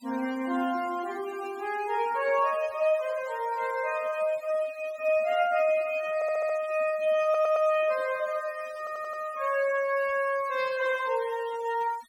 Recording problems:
noise reduction artefacts; signal-to-artefact ratio 19 dB
audio stuttering; at 6 s, at 7 s and at 9 s

